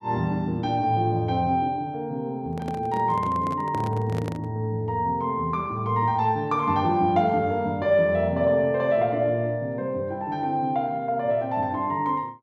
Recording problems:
microphone handling noise; from 2.5 to 4.5 s; peak -6 dB vs average level

